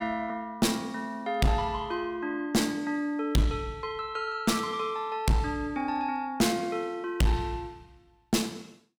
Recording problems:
distorted audio; hard clipping, uneven, signal-to-distortion ratio 7 dB

